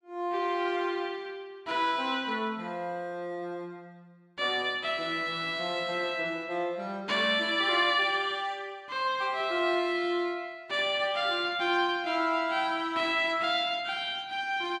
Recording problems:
none

